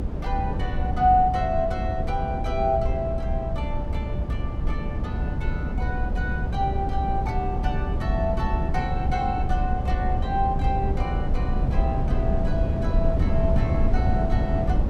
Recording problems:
rumble; below 130 Hz, SNR -2 dB

